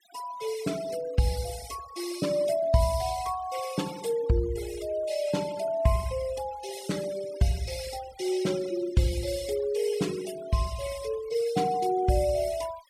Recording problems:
denoising artefacts; signal-to-artefact ratio 16 dB

